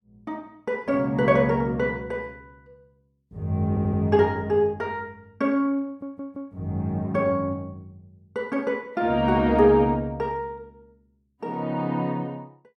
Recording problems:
stutter; at 3.5 s and at 6 s

